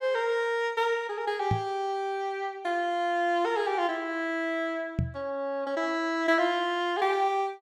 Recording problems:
microphone thump; at 1.5 s and at 5 s; peak +4 dB vs average level

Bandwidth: 14.5 kHz